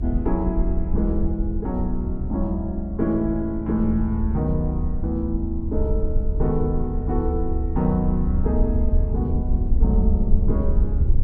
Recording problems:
low-frequency rumble; below 70 Hz, SNR 0 dB

